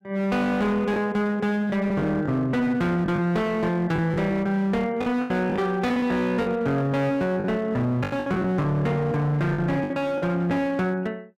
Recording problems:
distortion; hard clipping, uneven, signal-to-distortion ratio 10 dB
lost packets; 7% of the sound replaced, filled with the last packet

